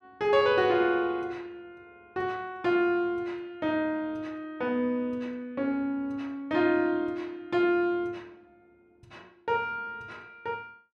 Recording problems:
none

